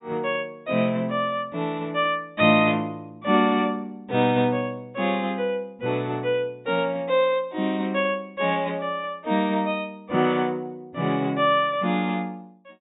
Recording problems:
treble cut off; nothing above 4 kHz

